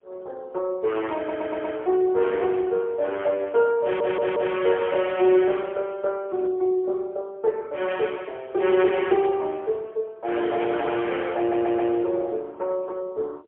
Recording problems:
phone line; 300 Hz to 3.3 kHz, AMR-NB, then MP3
stutter; at 1 s, at 4 s and at 11 s

